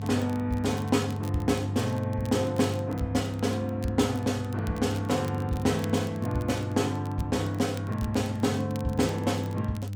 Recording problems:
hum; 50 Hz, harmonics up to 500 Hz, SNR 6 dB
crackling; vinyl, SNR 22 dB

